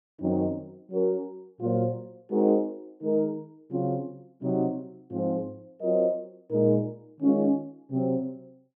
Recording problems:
none

